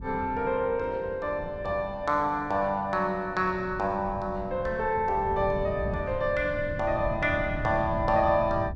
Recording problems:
wind noise; below 160 Hz, SNR 11 dB

